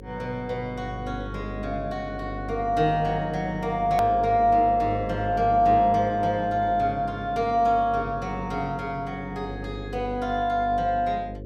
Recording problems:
hum; 50 Hz, harmonics up to 550 Hz, SNR 13 dB
hard cut with a click; at 4 s

